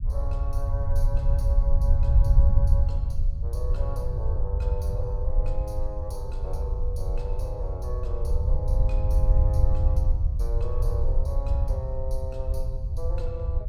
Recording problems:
low-frequency rumble; below 72 Hz, SNR -11 dB

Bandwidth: 17 kHz